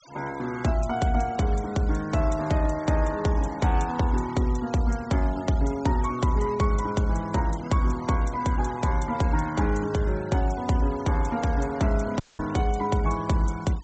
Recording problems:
low-pass filter; nothing above 8 kHz
noise reduction artefacts; signal-to-artefact ratio 21 dB
dropout; at 12 s

